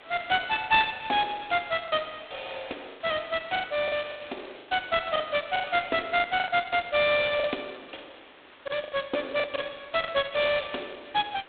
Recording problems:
telephone audio; 220 Hz to 3.7 kHz, G.726
hiss; SNR 22 dB
lost packets; 9% of the sound replaced, filled with the last packet

